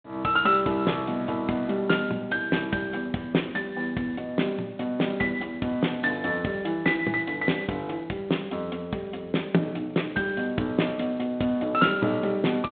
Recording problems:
phone line; 170 Hz to 3.8 kHz, G.726

